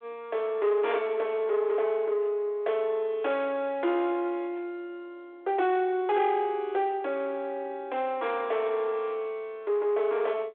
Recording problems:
phone line; 300 Hz to 3.6 kHz, G.726
distorted audio; soft clipping, signal-to-distortion ratio 12 dB

